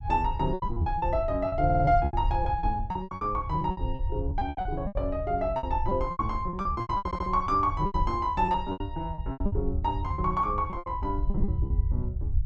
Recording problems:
low-frequency rumble; below 86 Hz, SNR 5 dB
lost packets; 18% of the sound replaced, filled with repeated pitch periods
audio stuttering; at 1.5 s and at 7 s

